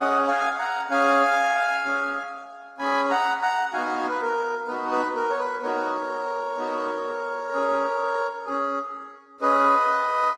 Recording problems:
codec artefacts; Opus, log-spectral distance 3 dB, nothing above 17.7 kHz

